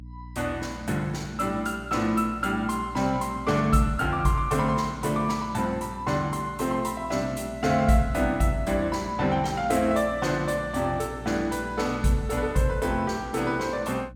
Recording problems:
electrical hum; 60 Hz, harmonics up to 300 Hz, SNR 17 dB

